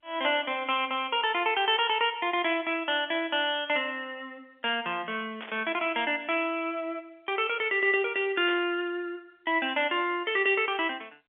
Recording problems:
phone line; 300 Hz to 3.4 kHz, G.711
static burst; at 5.5 s and at 8.5 s; peak -9 dB vs average level

